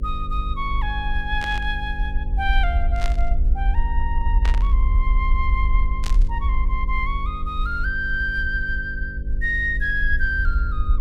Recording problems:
hum; 50 Hz, harmonics up to 550 Hz, SNR 8 dB
rumble; below 54 Hz, SNR -1 dB
static burst; 4 times, first at 1.5 s; peak -2 dB vs average level

